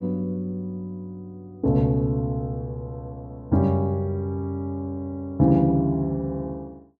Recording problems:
none

